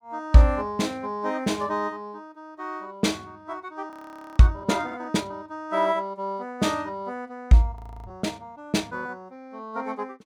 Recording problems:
audio freezing; at 4 s and at 8 s

